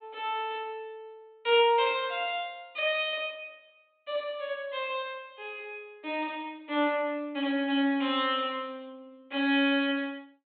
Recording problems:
treble cut off; nothing above 4 kHz

